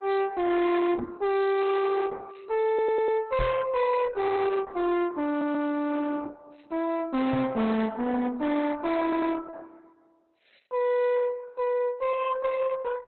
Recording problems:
codec artefacts; Opus, log-spectral distance 4 dB, nothing above 4 kHz
distortion; soft clipping, signal-to-distortion ratio 6 dB
knock on the microphone; at 1 s, at 3.5 s and at 7.5 s; peak +1 dB vs average level
stutter; 4 times, first at 2.5 s

